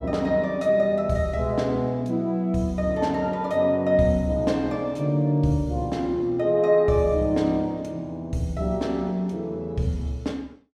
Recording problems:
none

